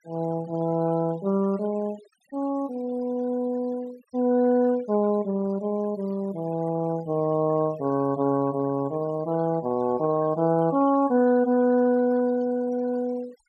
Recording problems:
denoising artefacts; signal-to-artefact ratio 24 dB

